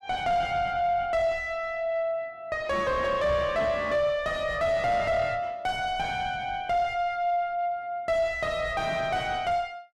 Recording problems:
distortion; soft clipping, signal-to-distortion ratio 6 dB

